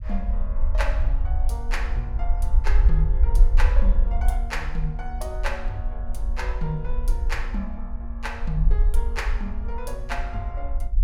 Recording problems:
rumble; below 52 Hz, SNR -7 dB

